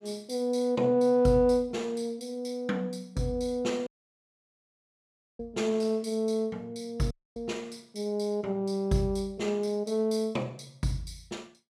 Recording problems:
audio cutting out; at 4 s for 1.5 s and at 7 s

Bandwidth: 15 kHz